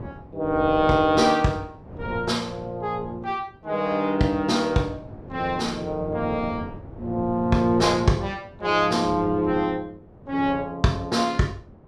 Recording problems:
wind noise; below 380 Hz, SNR 15 dB

